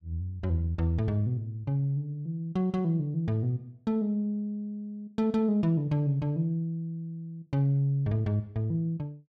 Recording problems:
none

